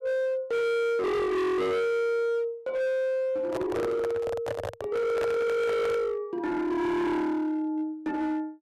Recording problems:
distortion; hard clipping, uneven, signal-to-distortion ratio 6 dB
microphone handling noise; from 3.5 to 6 s; peak -1 dB vs average level

